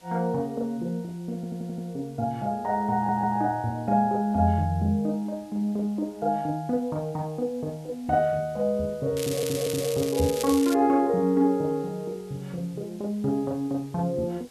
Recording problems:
hiss; SNR 27 dB
audio stuttering; at 1.5 s, at 3 s and at 9 s
crackle; from 9 to 11 s; loose cable, SNR 9 dB

